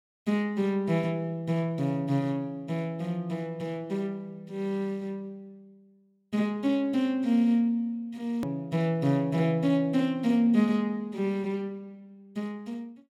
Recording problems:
edit click; at 8.5 s

